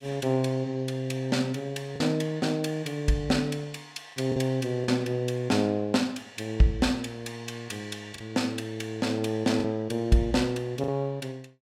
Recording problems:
packet loss; 2% of the sound replaced, filled with the last packet

